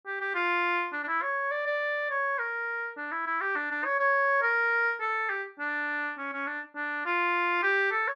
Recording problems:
none

